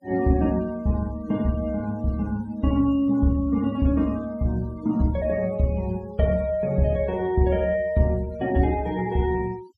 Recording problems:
denoising artefacts; signal-to-artefact ratio 26 dB

